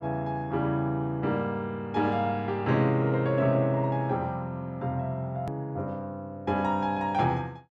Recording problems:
hard cut with a click; at 5.5 s

